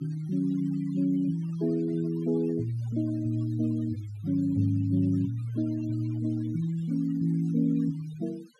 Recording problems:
noise reduction artefacts; signal-to-artefact ratio 24 dB

